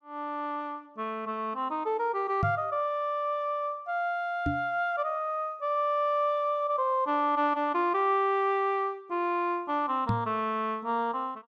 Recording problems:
knock on the microphone; at 2.5 s, at 4.5 s and at 10 s; peak +3 dB vs average level

